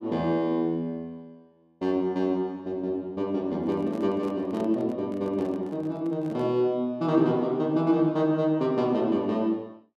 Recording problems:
microphone handling noise; from 3.5 to 6.5 s; peak -10 dB vs average level

